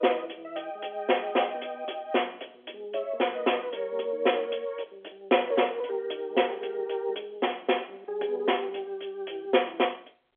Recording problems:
phone line; 300 Hz to 3.4 kHz, G.711

